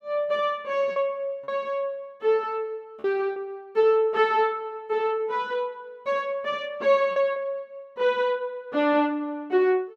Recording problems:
lost packets; 2% of the sound replaced, filled with repeated pitch periods

